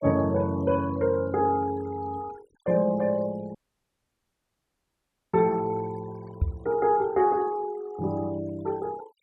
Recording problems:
denoising artefacts; signal-to-artefact ratio 22 dB
audio cutting out; at 3.5 s for 2 s
microphone bump; at 6.5 s; peak +5 dB vs average level

